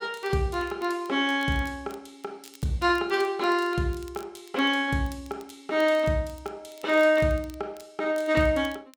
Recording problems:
crackling; vinyl, SNR 28 dB

